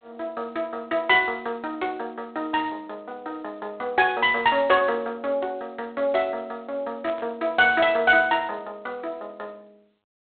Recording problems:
phone line; 340 Hz to 3.9 kHz, G.726
burst of static; at 7 s; peak -13 dB vs average level

